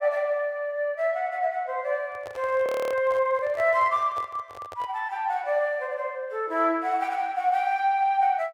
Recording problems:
handling noise; from 2 to 5 s; peak -10 dB vs average level
frozen audio; at 2.5 s

